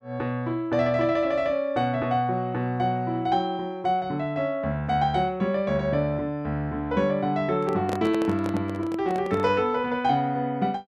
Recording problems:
microphone handling noise; from 7.5 to 9.5 s; peak -2 dB vs average level

